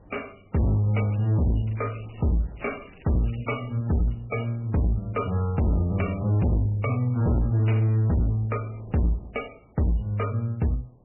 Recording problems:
codec artefacts; MP3, log-spectral distance 7 dB, nothing above 2.4 kHz
distortion; hard clipping, signal-to-distortion ratio 7 dB
wind noise; below 470 Hz, SNR 26 dB
crackle; from 1 to 4 s and at 5.5 s; loose cable, SNR 27 dB

